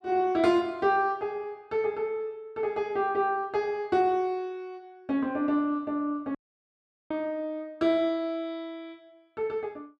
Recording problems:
dropout; at 6.5 s for 1 s

